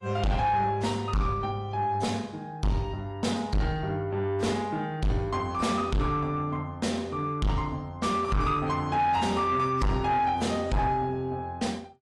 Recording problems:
codec artefacts; AAC, log-spectral distance 2 dB
distortion; soft clipping, signal-to-distortion ratio 7 dB

